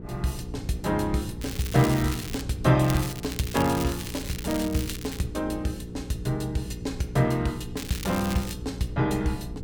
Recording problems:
electrical hum; 60 Hz, harmonics up to 480 Hz, SNR 12 dB
rumble; below 130 Hz, SNR 15 dB
crackling; from 1.5 to 2.5 s, from 3 to 5 s and at 8 s; loose cable, SNR 10 dB

